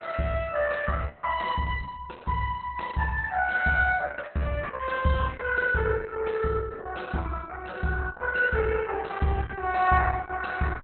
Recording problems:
lossy codec; Opus, log-spectral distance 4 dB, nothing above 4.1 kHz

